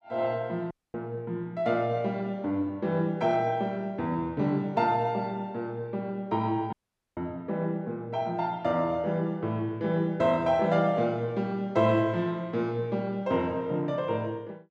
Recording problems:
audio cutting out; at 0.5 s and at 6.5 s

